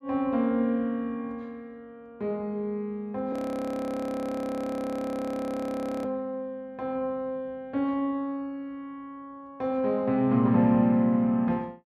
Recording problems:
audio freezing; at 3.5 s for 2.5 s

